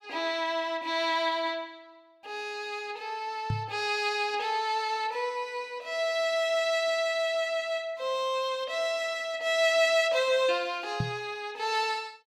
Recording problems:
knock on the microphone; at 3.5 s and at 11 s; peak +2 dB vs average level

